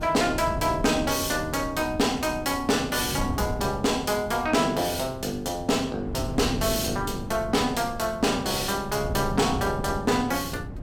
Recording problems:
distortion; soft clipping, signal-to-distortion ratio 11 dB
wind on the microphone; below 240 Hz, SNR 10 dB

